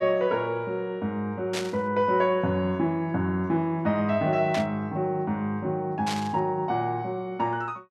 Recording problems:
static burst; at 1.5 s, at 4.5 s and at 6 s; peak -1 dB vs average level

